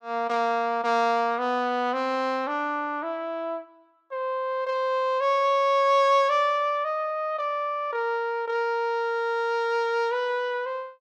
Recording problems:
none

